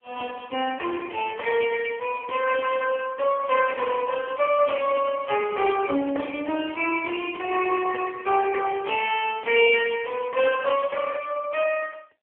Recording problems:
telephone audio; 220 Hz to 3.1 kHz, AMR-NB

